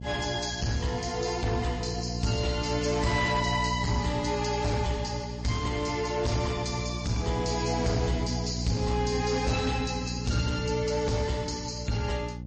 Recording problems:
codec artefacts; MP3, log-spectral distance 8 dB, nothing above 7.1 kHz
distortion; soft clipping, signal-to-distortion ratio 10 dB
hum; 60 Hz, harmonics up to 600 Hz, SNR 6 dB

